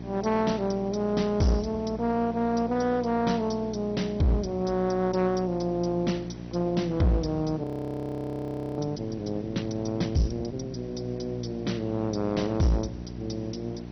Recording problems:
lossy codec; MP2, log-spectral distance 4 dB, nothing above 6 kHz
distortion; hard clipping, uneven, signal-to-distortion ratio 11 dB
mains hum; 60 Hz, harmonics up to 780 Hz, SNR 11 dB
hiss; slope -4 dB per octave, SNR 24 dB
frozen audio; at 7.5 s for 1 s

